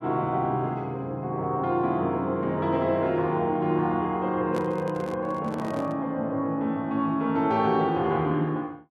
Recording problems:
handling noise; from 4.5 to 6 s; peak -3 dB vs average level

